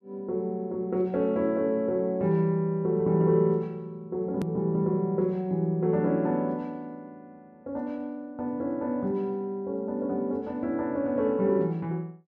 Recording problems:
hard cut with a click; at 4.5 s

